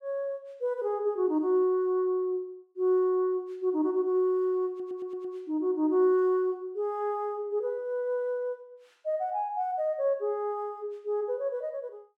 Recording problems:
audio stuttering; at 4.5 s

